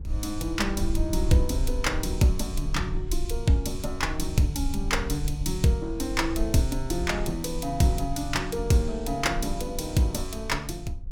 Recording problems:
rumble; below 60 Hz, SNR 7 dB

